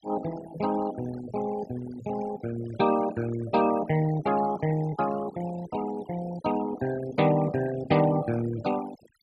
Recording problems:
noise reduction artefacts; signal-to-artefact ratio 14 dB

